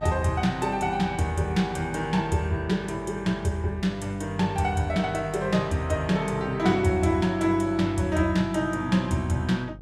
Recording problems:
electrical hum; 50 Hz, harmonics up to 550 Hz, SNR 18 dB

